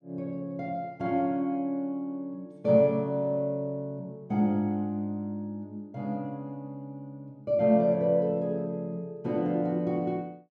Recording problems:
none

